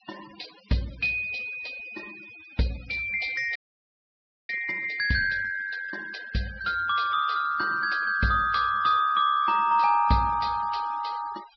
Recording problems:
low-pass filter; nothing above 5.5 kHz
denoising artefacts; signal-to-artefact ratio 22 dB
audio freezing; at 3.5 s for 1 s

